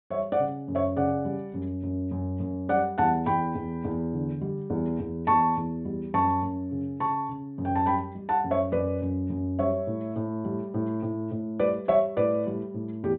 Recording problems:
low-pass filter; nothing above 4 kHz

